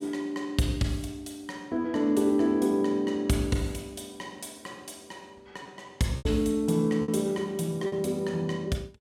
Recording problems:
lost packets; 3% of the sound replaced, filled with repeated pitch periods

